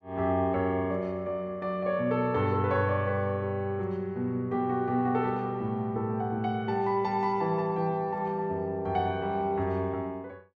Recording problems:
none

